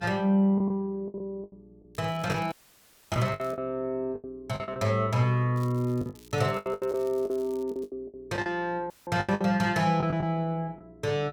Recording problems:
hum; 60 Hz, harmonics up to 420 Hz, SNR 27 dB
lost packets; 13% of the sound replaced, filled with the last packet
crackle; from 2 to 3.5 s and from 5.5 to 8 s; loose cable, SNR 26 dB
audio cutting out; at 2.5 s for 0.5 s and at 9 s

